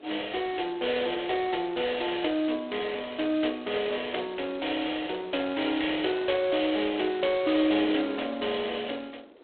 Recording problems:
phone line; 280 Hz to 3.5 kHz, G.726
wind noise; below 610 Hz, SNR 22 dB

